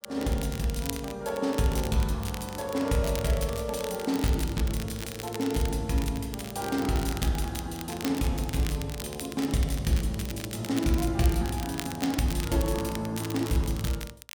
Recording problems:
crackling; vinyl, SNR 11 dB

